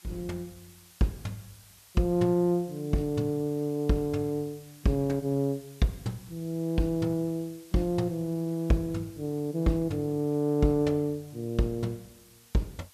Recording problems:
background hiss; slope +1 dB per octave, SNR 24 dB

